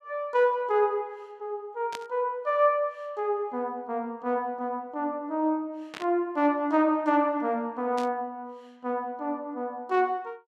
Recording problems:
static burst; at 2 s, at 6 s and at 8 s; peak -6 dB vs average level

